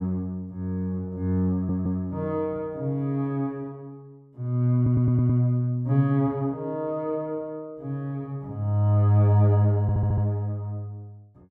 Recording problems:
stutter; at 1.5 s, at 5 s and at 10 s

